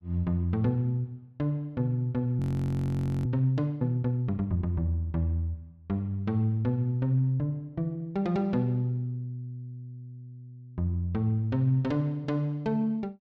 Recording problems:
audio freezing; at 2.5 s for 1 s

